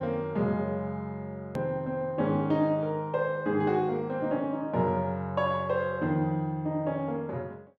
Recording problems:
click at an edit; at 1.5 s

